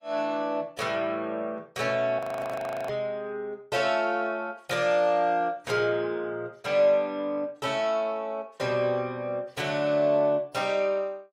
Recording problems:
codec artefacts; AAC, log-spectral distance 2 dB, nothing above 16 kHz
frozen audio; at 2 s for 0.5 s

